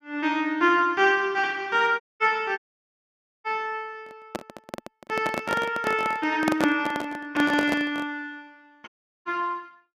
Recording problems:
audio cutting out; at 2 s, at 2.5 s for 1 s and at 9 s
handling noise; from 4 to 8 s; peak +3 dB vs average level

